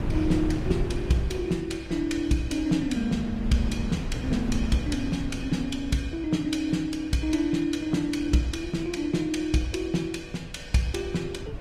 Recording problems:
codec artefacts; Opus, log-spectral distance 3 dB, nothing above 18.3 kHz
wind noise; below 180 Hz, SNR 8 dB

